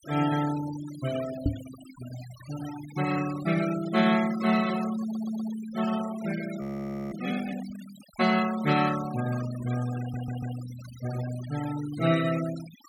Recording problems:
denoising artefacts; signal-to-artefact ratio 13 dB
knock on the microphone; at 1.5 s; peak +6 dB vs average level
stutter; at 5 s and at 10 s
audio freezing; at 6.5 s for 0.5 s

